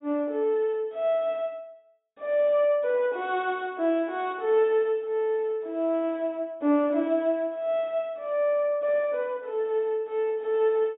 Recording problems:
treble cut off; nothing above 4 kHz

